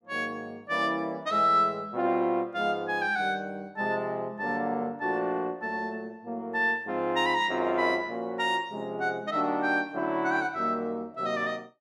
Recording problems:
none

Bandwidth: 13.5 kHz